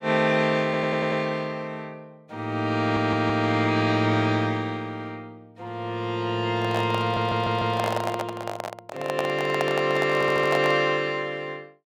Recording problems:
audio stuttering; 4 times, first at 0.5 s
handling noise; from 6.5 to 11 s; peak +1 dB vs average level

